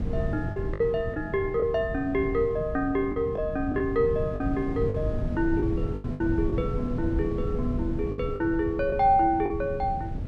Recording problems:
low-frequency rumble; below 170 Hz, SNR 6 dB
lost packets; 7% of the sound replaced, filled with the last packet

